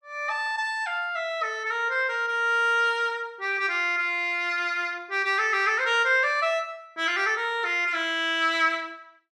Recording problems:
none

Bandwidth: 13 kHz